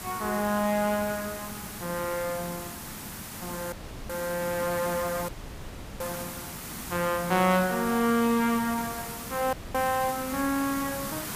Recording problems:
background hiss; slope -2 dB per octave, SNR 9 dB
dropout; at 3.5 s, at 5.5 s for 0.5 s and at 9.5 s

